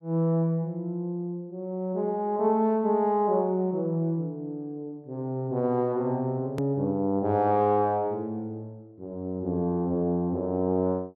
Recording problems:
edit click; at 6.5 s

